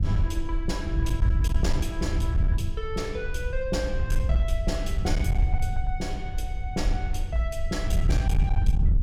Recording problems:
distortion; hard clipping, signal-to-distortion ratio 12 dB
low-frequency rumble; below 52 Hz, SNR 4 dB
wind noise; below 82 Hz, SNR -3 dB

